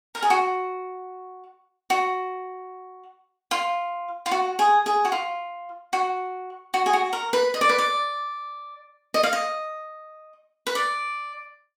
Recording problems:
none

